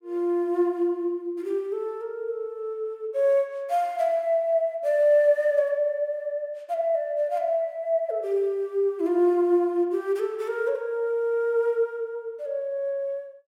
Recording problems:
none

